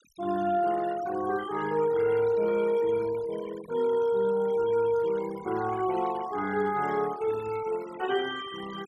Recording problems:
noise reduction artefacts; signal-to-artefact ratio 16 dB

